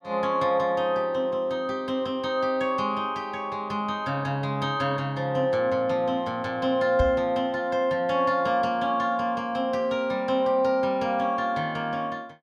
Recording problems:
microphone bump; at 7 s; peak +2 dB vs average level

